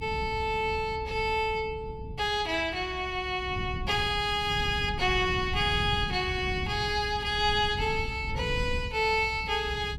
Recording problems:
rumble; below 140 Hz, SNR 10 dB

